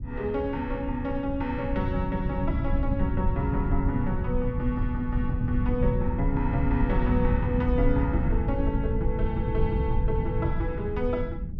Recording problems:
low-frequency rumble; below 120 Hz, SNR -1 dB

